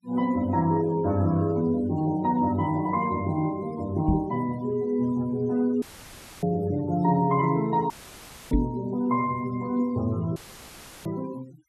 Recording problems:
noise reduction artefacts; signal-to-artefact ratio 23 dB
microphone thump; at 4 s and at 8.5 s; peak +5 dB vs average level
audio cutting out; at 6 s for 0.5 s, at 8 s for 0.5 s and at 10 s for 0.5 s; filled with static

